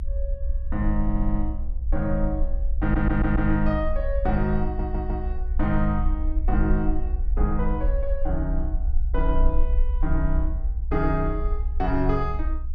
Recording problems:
low-frequency rumble; below 60 Hz, SNR 0 dB
stutter; at 1 s, at 3 s and at 4.5 s

